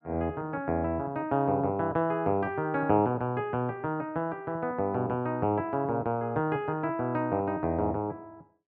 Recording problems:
none

